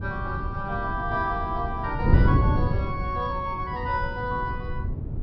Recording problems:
treble cut off; nothing above 5.5 kHz
wind on the microphone; below 150 Hz, SNR -1 dB

